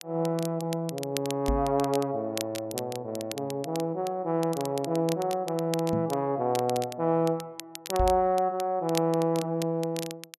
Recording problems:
crackling; vinyl, SNR 13 dB
microphone thump; at 1.5 s, at 6 s and at 8 s; peak +2 dB vs average level

